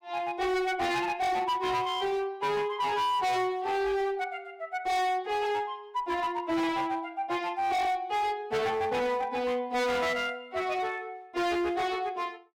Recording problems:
distorted audio; hard clipping, uneven, signal-to-distortion ratio 7 dB

